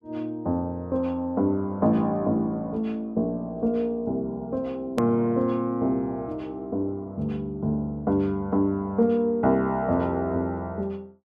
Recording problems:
hard cut with a click; at 5 s

